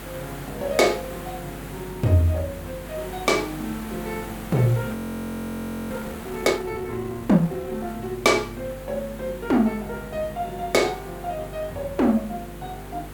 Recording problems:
electrical hum; 50 Hz, harmonics up to 500 Hz, SNR 16 dB
background hiss; SNR 15 dB
audio freezing; at 5 s for 1 s

